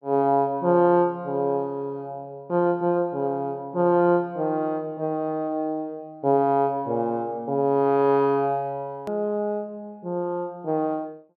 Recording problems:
hard cut with a click; at 9 s

